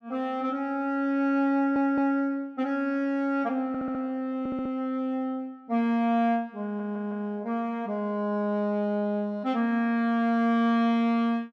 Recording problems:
stutter; 4 times, first at 1.5 s

